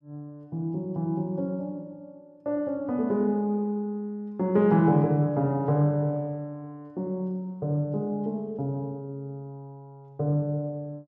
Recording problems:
none

